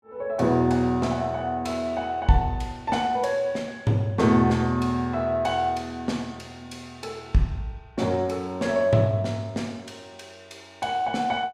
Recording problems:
none

